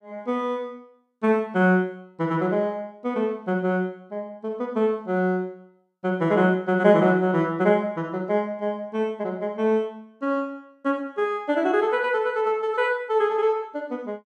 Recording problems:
none

